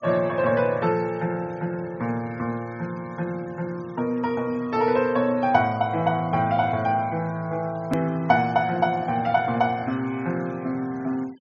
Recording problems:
treble missing; nothing above 6.9 kHz
denoising artefacts; signal-to-artefact ratio 26 dB
hard cut with a click; at 8 s

